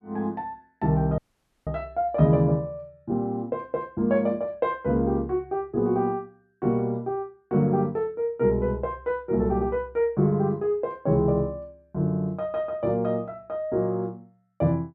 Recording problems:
audio cutting out; at 1 s

